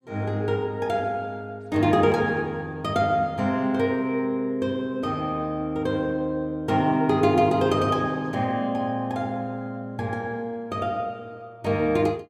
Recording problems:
none

